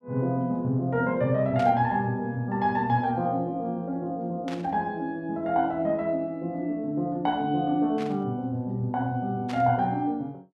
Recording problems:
burst of static; 4 times, first at 1.5 s; peak -9 dB vs average level

